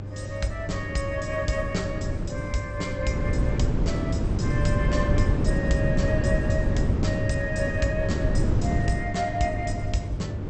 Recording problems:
codec artefacts; MP2, log-spectral distance 2 dB, nothing above 8.5 kHz
electrical hum; 50 Hz, harmonics up to 900 Hz, SNR 7 dB
wind noise; below 210 Hz, SNR -3 dB

